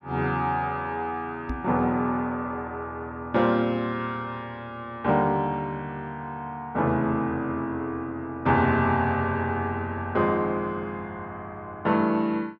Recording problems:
microphone bump; at 1.5 s; peak -2 dB vs average level

